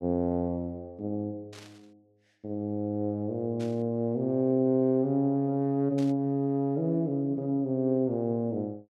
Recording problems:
burst of static; at 1.5 s, at 3.5 s and at 6 s; peak -14 dB vs average level

